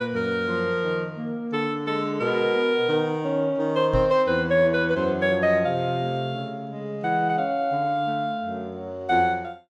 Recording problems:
microphone thump; at 4 s; peak +1 dB vs average level

